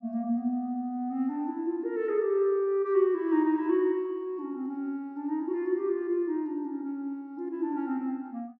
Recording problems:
none

